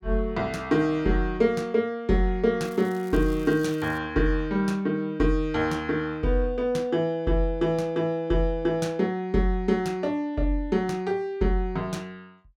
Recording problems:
crackle; from 2.5 to 4 s; loose cable, SNR 25 dB

